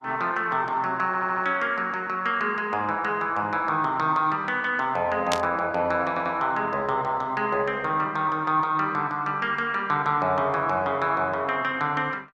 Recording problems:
lossy compression; Opus, log-spectral distance 2 dB
stutter; at 1 s and at 6 s
static burst; at 5.5 s; peak +2 dB vs average level

